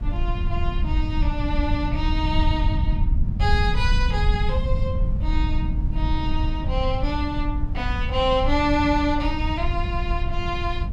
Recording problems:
low-frequency rumble; below 82 Hz, SNR -1 dB
wind noise; below 650 Hz, SNR 21 dB

